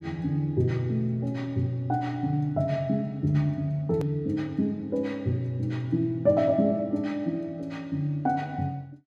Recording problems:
click at an edit; at 4 s

